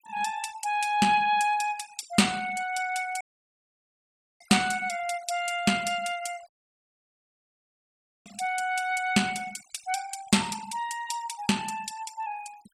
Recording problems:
noise reduction artefacts; signal-to-artefact ratio 18 dB
audio cutting out; at 3 s for 1 s and at 6.5 s for 2 s

